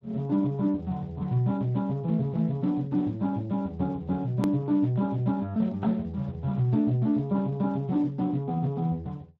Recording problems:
codec artefacts; Speex, log-spectral distance 2 dB, nothing above 13.1 kHz
edit click; at 4.5 s

